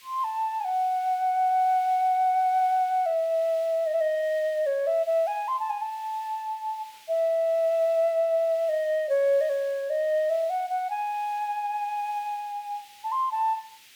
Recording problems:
background hiss; SNR 25 dB

